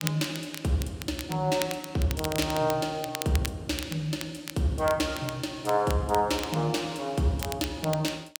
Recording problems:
crackling; vinyl, SNR 10 dB

